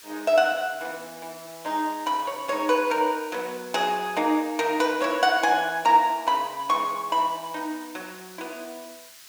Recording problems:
hiss; SNR 20 dB

